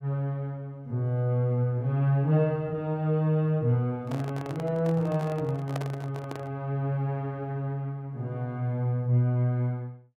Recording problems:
microphone handling noise; from 4 to 6.5 s; peak -3 dB vs average level

